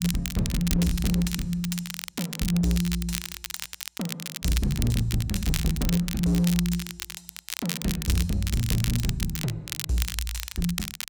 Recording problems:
distortion; hard clipping, signal-to-distortion ratio 12 dB
crackling; vinyl, SNR 6 dB

